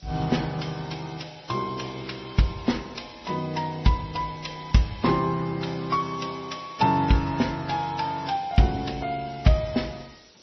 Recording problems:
lossy compression; MP3, then AAC, log-spectral distance 13 dB, nothing above 5.8 kHz
hiss; SNR 26 dB

